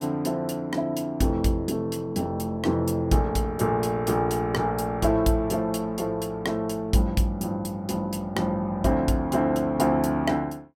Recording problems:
none

